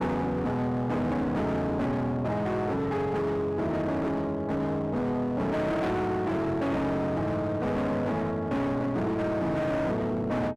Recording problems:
distortion; hard clipping, uneven, signal-to-distortion ratio 7 dB

